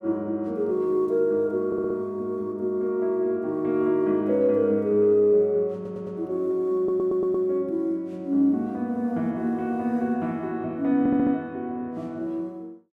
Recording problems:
audio stuttering; 4 times, first at 1.5 s

